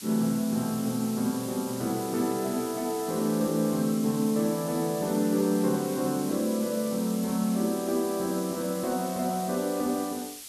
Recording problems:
hiss; SNR 12 dB

